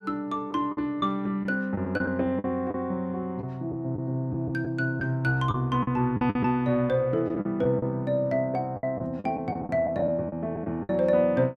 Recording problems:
lost packets; 8% of the sound replaced, filled with the last packet

